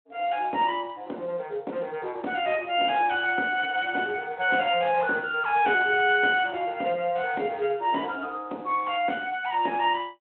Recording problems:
phone line; 240 Hz to 3.3 kHz, Speex

